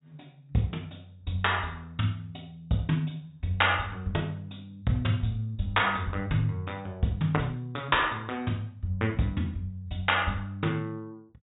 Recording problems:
treble missing; nothing above 4 kHz

